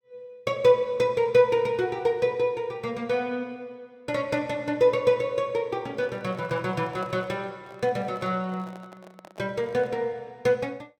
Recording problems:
handling noise; from 6 to 10 s; peak -12 dB vs average level

